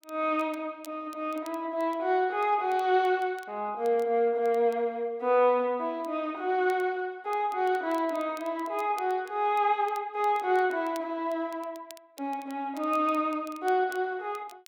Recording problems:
crackle; vinyl, SNR 27 dB

